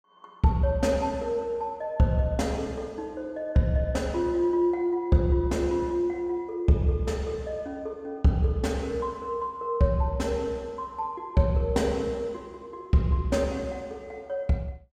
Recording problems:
none

